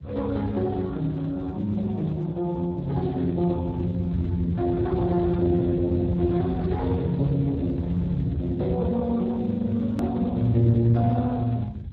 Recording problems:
lossy codec; Speex, log-spectral distance 3 dB, nothing above 13.1 kHz
rumble; below 140 Hz, SNR 8 dB
edit click; at 10 s

